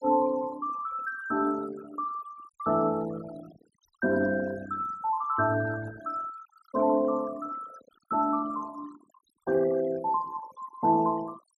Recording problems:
denoising artefacts; signal-to-artefact ratio 18 dB

